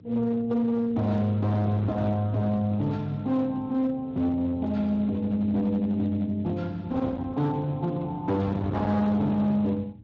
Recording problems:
lossy codec; Speex, log-spectral distance 2 dB
distortion; hard clipping, signal-to-distortion ratio 10 dB
hum; 60 Hz, harmonics up to 300 Hz, SNR 25 dB
wind on the microphone; below 380 Hz, SNR 14 dB

